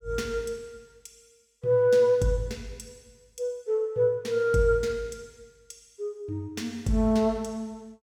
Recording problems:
none

